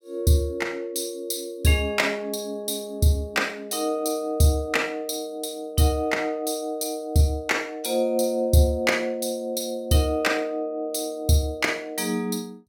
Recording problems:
none

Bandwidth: 17 kHz